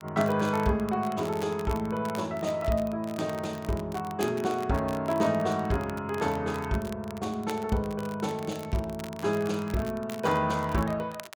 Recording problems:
crackle; vinyl, SNR 18 dB

